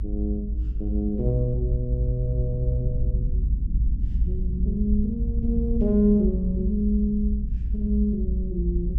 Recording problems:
low-frequency rumble; below 60 Hz, SNR 1 dB

